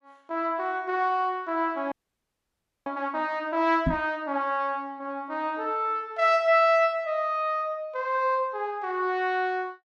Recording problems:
frozen audio; at 2 s for 1 s
knock on the microphone; at 4 s; peak +4 dB vs average level

